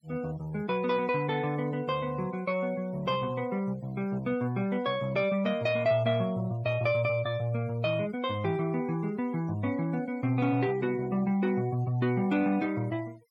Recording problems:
denoising artefacts; signal-to-artefact ratio 23 dB

